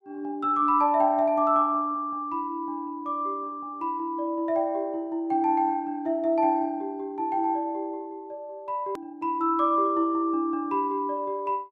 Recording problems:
edit click; at 9 s

